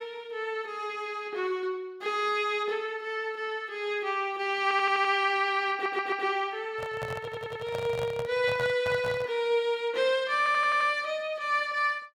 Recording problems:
audio stuttering; 4 times, first at 4.5 s
handling noise; from 6.5 to 9.5 s; peak -5 dB vs average level

